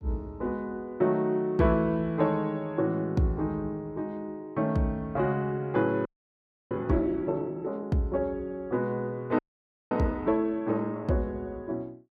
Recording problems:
audio freezing; at 6 s for 0.5 s and at 9.5 s for 0.5 s

